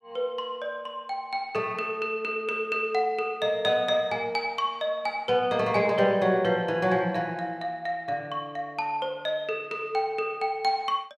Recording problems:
none

